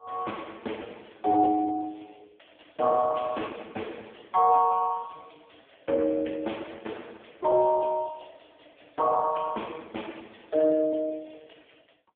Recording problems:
phone line; 220 Hz to 3.4 kHz, AMR-NB

